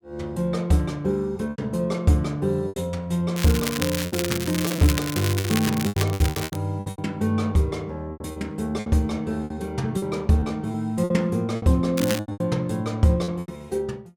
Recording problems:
packet loss; 11% of the sound replaced, filled with repeated pitch periods
crackle; from 3.5 to 6.5 s and at 12 s; loose cable, SNR 6 dB

